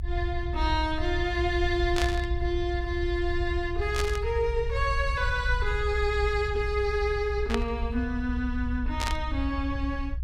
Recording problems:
low-frequency rumble; below 66 Hz, SNR 3 dB
static burst; 4 times, first at 2 s; peak +2 dB vs average level

